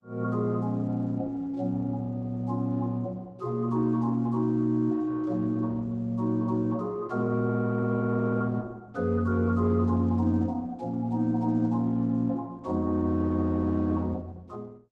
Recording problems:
lossy codec; Opus, log-spectral distance 2 dB, nothing above 11.6 kHz

